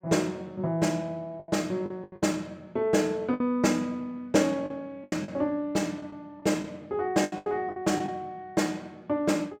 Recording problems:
packet loss; 8% of the sound replaced, filled with the last packet

